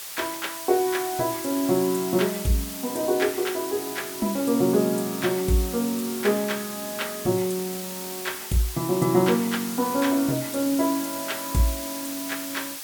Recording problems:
hiss; slope +2 dB per octave, SNR 8 dB

